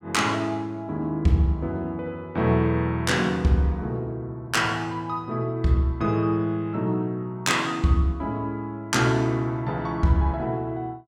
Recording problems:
none

